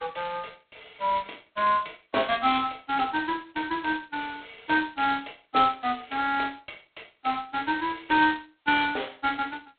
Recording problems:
telephone audio; 320 Hz to 3.9 kHz, G.726

